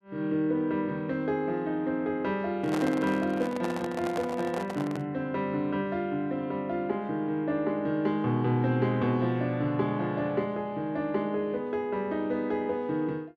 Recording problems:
microphone handling noise; from 2.5 to 5 s; peak -1 dB vs average level

